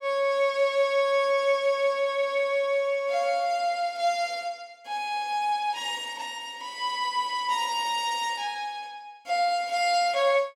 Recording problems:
none

